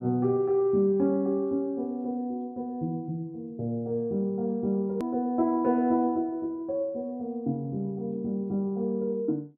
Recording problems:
hard cut with a click; at 5 s

